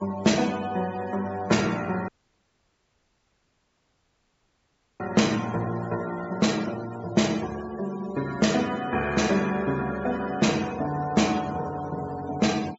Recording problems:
treble missing; nothing above 7.5 kHz
noise reduction artefacts; signal-to-artefact ratio 18 dB
audio cutting out; at 2 s for 3 s

